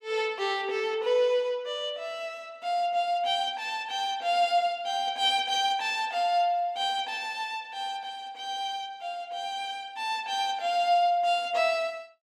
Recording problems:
none

